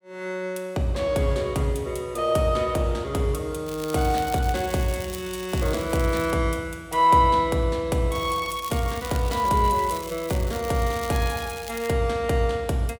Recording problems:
crackle; from 3.5 to 6.5 s and from 8 to 12 s; loose cable, SNR 15 dB

